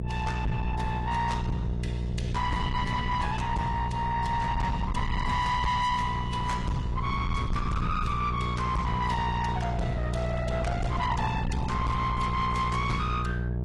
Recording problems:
lossy codec; AAC, log-spectral distance 2 dB, nothing above 11 kHz
distortion; soft clipping, signal-to-distortion ratio 7 dB
electrical hum; 60 Hz, harmonics up to 660 Hz, SNR 3 dB
rumble; below 190 Hz, SNR 7 dB

